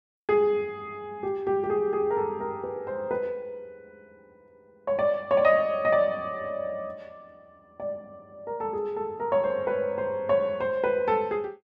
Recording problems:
none

